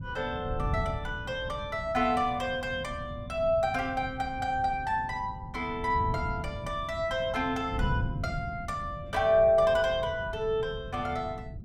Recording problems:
wind noise; below 150 Hz, SNR 9 dB

